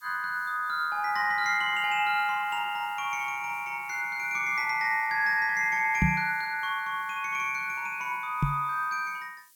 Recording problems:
hiss; SNR 28 dB
microphone bump; at 6 s and at 8.5 s; peak +5 dB vs average level

